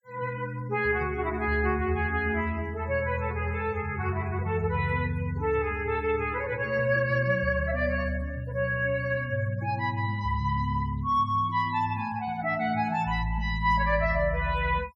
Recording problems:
denoising artefacts; signal-to-artefact ratio 25 dB

